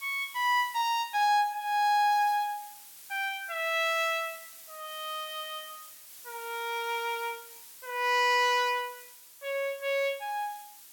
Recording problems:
hiss; slope +2 dB per octave, SNR 18 dB

